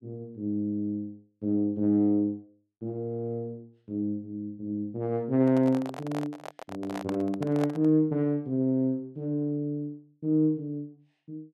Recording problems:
microphone handling noise; from 5.5 to 8 s; peak -2 dB vs average level

